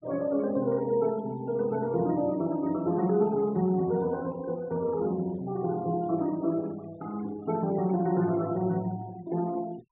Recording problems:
treble cut off; nothing above 3.7 kHz
noise reduction artefacts; signal-to-artefact ratio 22 dB

